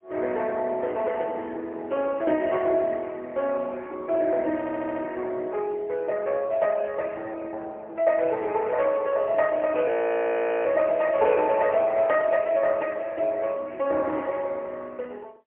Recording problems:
phone line; 280 Hz to 3.1 kHz, AMR-NB, then MP3
stutter; at 4.5 s
audio freezing; at 10 s for 1 s

